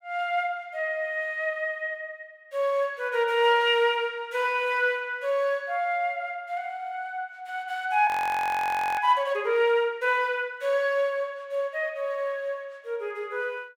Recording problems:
audio freezing; at 8 s for 1 s

